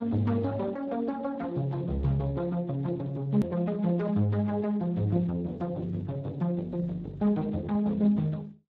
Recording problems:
lossy codec; Speex, log-spectral distance 2 dB, nothing above 13.1 kHz
edit click; at 3.5 s

